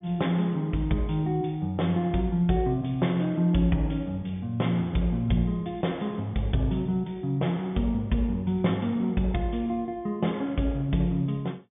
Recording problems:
treble cut off; nothing above 3.6 kHz

